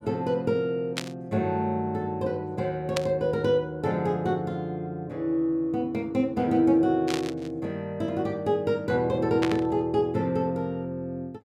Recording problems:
burst of static; 4 times, first at 1 s; peak +1 dB vs average level

